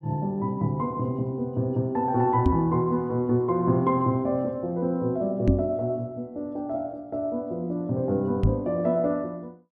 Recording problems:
microphone bump; at 2.5 s, at 5.5 s and at 8.5 s; peak +8 dB vs average level

